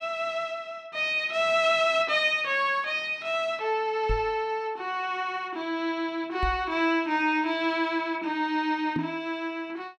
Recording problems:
knock on the microphone; at 4 s, at 6.5 s and at 9 s; peak 0 dB vs average level

